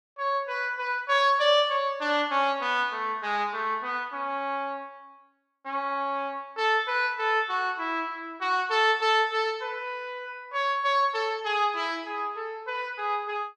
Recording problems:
none

